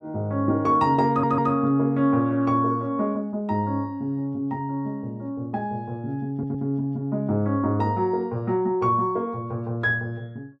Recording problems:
audio stuttering; at 1 s and at 6.5 s

